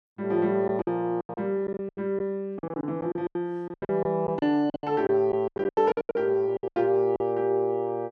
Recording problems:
lost packets; 18% of the sound replaced, filled with silence

